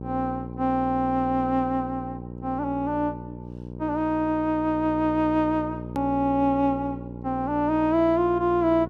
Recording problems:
hum; 60 Hz, harmonics up to 960 Hz, SNR 11 dB
edit click; at 6 s

